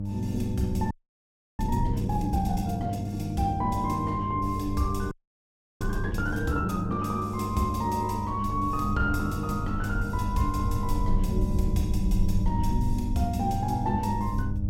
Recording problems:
hum; 50 Hz, harmonics up to 600 Hz, SNR 4 dB
low-frequency rumble; below 76 Hz, SNR 5 dB
audio freezing; at 1 s for 0.5 s and at 5 s for 0.5 s

